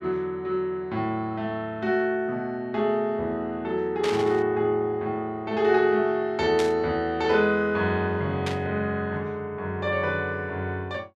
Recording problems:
burst of static; at 4 s, at 6.5 s and at 8.5 s; peak -2 dB vs average level

